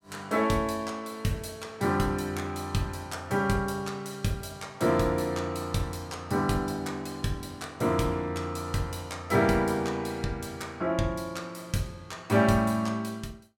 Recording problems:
none

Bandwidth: 17 kHz